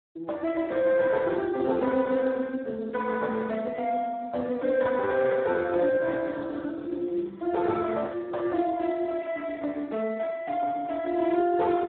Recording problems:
telephone audio; 240 Hz to 2.1 kHz, Speex

